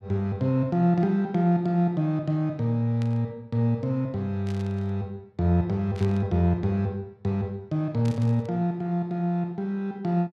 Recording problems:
burst of static; 4 times, first at 3 s; peak -14 dB vs average level

